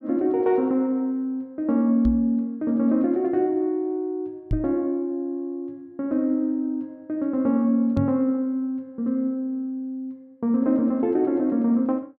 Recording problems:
microphone bump; at 2 s, at 4.5 s and at 8 s; peak +2 dB vs average level

